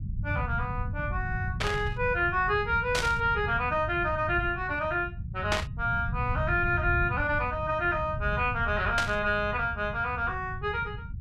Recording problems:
rumble; below 130 Hz, SNR 7 dB
burst of static; 4 times, first at 1.5 s; peak +3 dB vs average level

